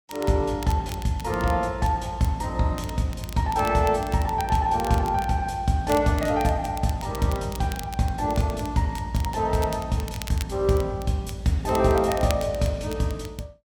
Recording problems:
crackling; vinyl, SNR 18 dB

